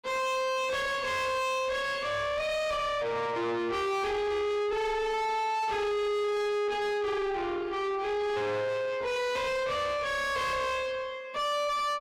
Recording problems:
distortion; soft clipping, signal-to-distortion ratio 6 dB

